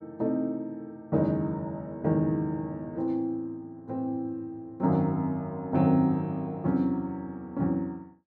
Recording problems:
none

